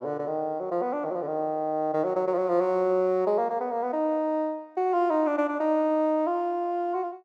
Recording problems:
none

